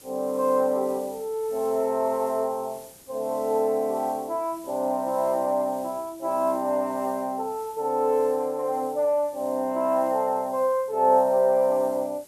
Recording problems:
hiss; SNR 23 dB

